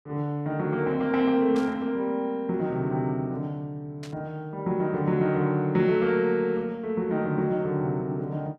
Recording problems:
static burst; at 1.5 s and at 4 s; peak -13 dB vs average level

